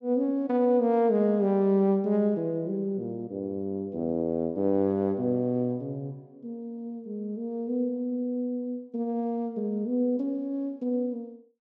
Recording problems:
none

